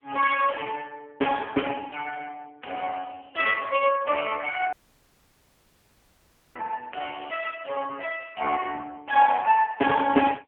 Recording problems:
phone line; 220 Hz to 2.9 kHz, AMR-NB
dropout; at 4.5 s for 2 s

